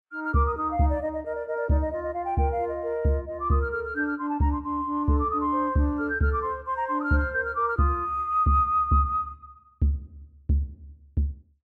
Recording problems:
none

